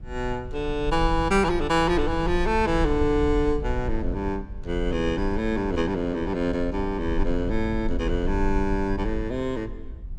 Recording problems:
low-frequency rumble; below 58 Hz, strongest tone 20 Hz, SNR 8 dB

